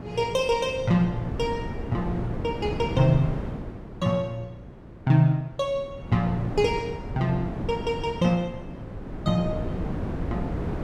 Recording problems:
wind on the microphone; below 340 Hz, SNR 7 dB

